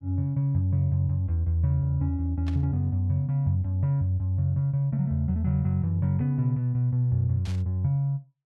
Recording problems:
static burst; at 2.5 s and at 7.5 s; peak -14 dB vs average level

